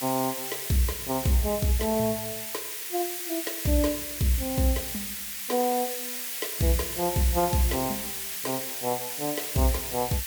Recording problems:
background hiss; SNR 3 dB

